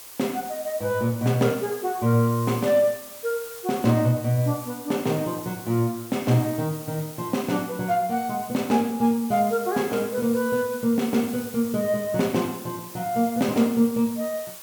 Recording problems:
background hiss; slope 0 dB per octave, SNR 15 dB

